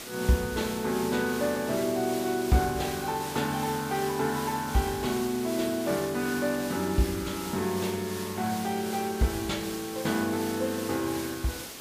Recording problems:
hiss; slope -2 dB per octave, SNR 9 dB

